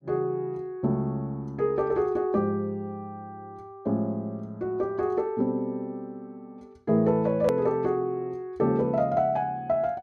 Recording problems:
click at an edit; at 7.5 s

